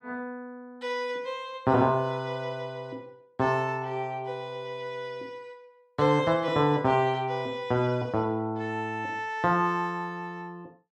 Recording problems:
none

